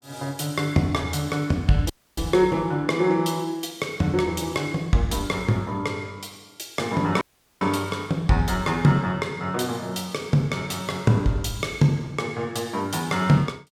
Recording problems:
dropout; at 2 s and at 7 s

